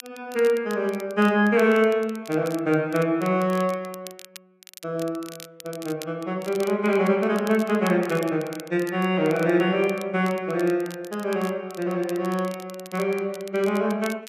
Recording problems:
crackle; vinyl, SNR 20 dB

